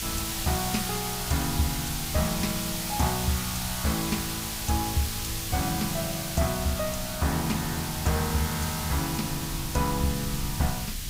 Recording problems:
background hiss; slope +3 dB per octave, SNR 2 dB
rumble; below 100 Hz, SNR 12 dB

